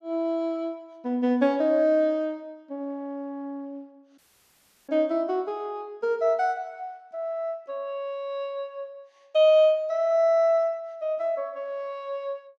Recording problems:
dropout; at 4 s for 0.5 s

